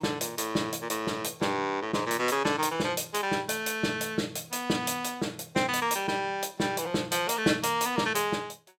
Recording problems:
none

